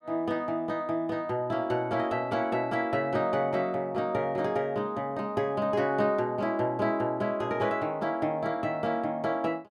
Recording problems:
none

